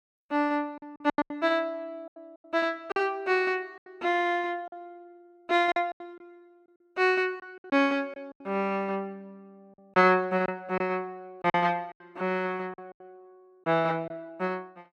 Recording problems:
packet loss; 10% of the sound replaced, filled with silence

